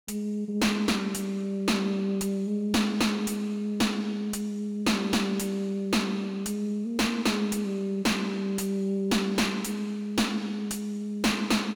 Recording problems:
distorted audio; soft clipping, signal-to-distortion ratio 6 dB

